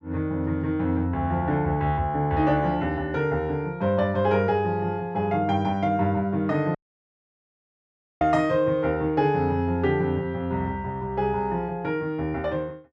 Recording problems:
dropout; at 7 s for 1.5 s

